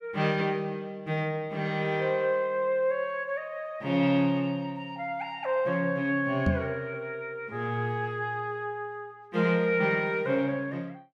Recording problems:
microphone thump; at 6.5 s; peak +6 dB vs average level

